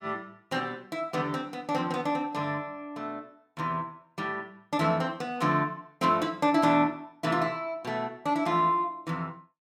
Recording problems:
none

